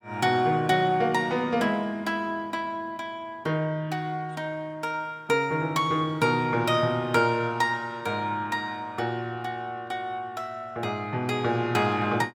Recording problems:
none

